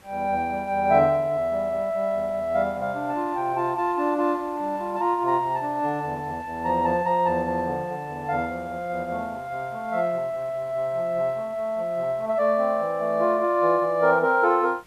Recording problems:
background hiss; slope -4 dB per octave, SNR 28 dB

